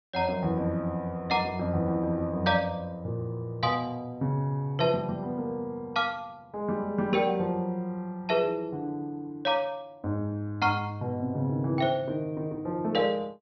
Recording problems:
low-pass filter; nothing above 5.9 kHz

